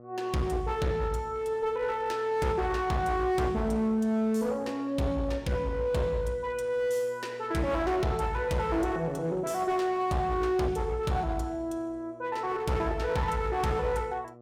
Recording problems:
distorted audio; hard clipping, uneven, signal-to-distortion ratio 10 dB
hum; 60 Hz, harmonics up to 1.3 kHz, SNR 22 dB

